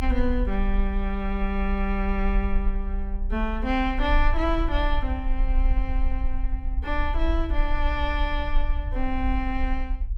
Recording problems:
low-frequency rumble; below 48 Hz, SNR 0 dB

